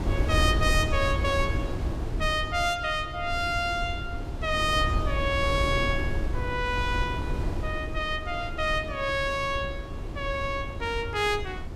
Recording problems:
wind noise; below 150 Hz, SNR 4 dB

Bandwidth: 15.5 kHz